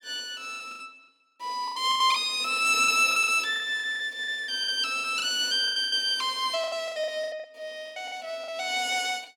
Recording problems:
lost packets; 16% of the sound replaced, filled with the last packet

